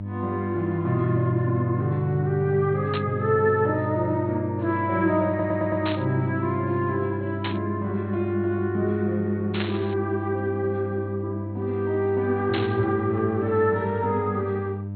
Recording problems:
treble missing; nothing above 4.3 kHz
mains hum; 50 Hz, harmonics up to 600 Hz, SNR 7 dB
burst of static; 5 times, first at 3 s; peak -1 dB vs average level
audio stuttering; at 5.5 s

